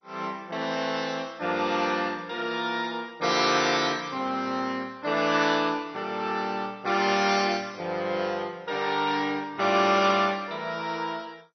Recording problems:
codec artefacts; MP2, log-spectral distance 6 dB, nothing above 5.2 kHz

